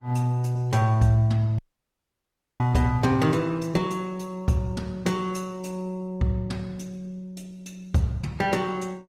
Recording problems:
lossy codec; Opus, log-spectral distance 2 dB, nothing above 18.3 kHz
audio cutting out; at 1.5 s for 1 s

